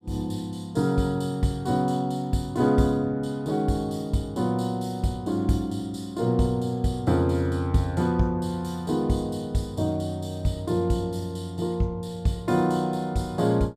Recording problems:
none

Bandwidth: 14.5 kHz